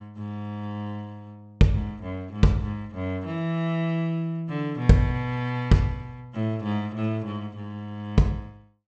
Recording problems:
treble missing; nothing above 8 kHz

